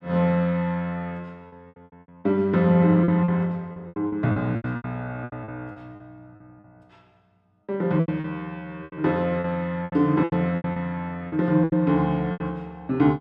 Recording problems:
lost packets; 13% of the sound replaced, filled with repeated pitch periods

